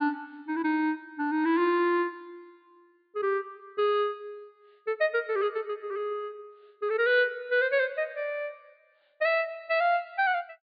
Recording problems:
treble missing; nothing above 4.9 kHz

